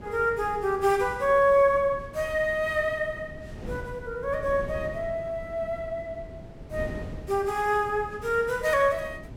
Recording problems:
wind on the microphone; below 290 Hz, SNR 16 dB

